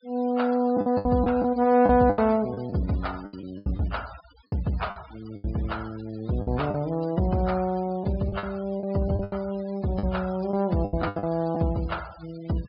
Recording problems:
low-pass filter; nothing above 5.5 kHz
noise reduction artefacts; signal-to-artefact ratio 22 dB
packet loss; 10% of the sound replaced, filled with the last packet

